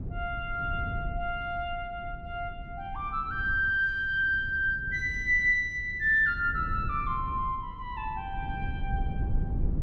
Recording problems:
low-frequency rumble; below 110 Hz, SNR 10 dB

